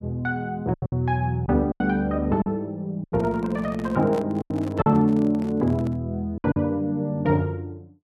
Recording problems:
packet loss; 7% of the sound replaced, filled with silence
microphone handling noise; from 3 to 6 s; peak -7 dB vs average level

